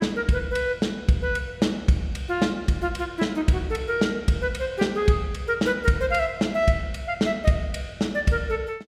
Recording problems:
none

